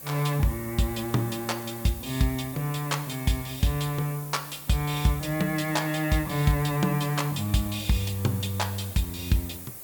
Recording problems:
background hiss; SNR 12 dB

